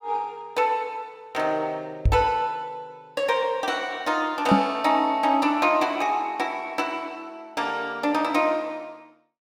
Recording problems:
knock on the microphone; at 2 s and at 4.5 s; peak +8 dB vs average level

